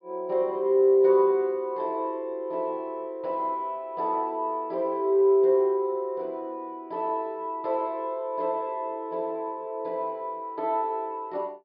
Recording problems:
low-pass filter; nothing above 5.5 kHz

